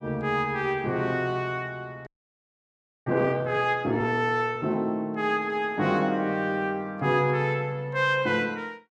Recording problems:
audio freezing; at 2 s for 1 s

